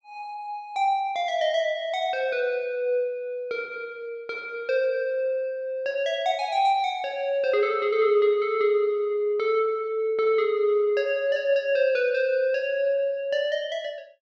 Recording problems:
none

